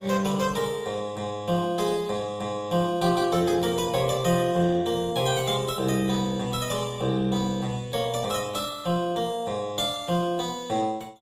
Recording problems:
lossy codec; Opus, log-spectral distance 4 dB, nothing above 15.5 kHz

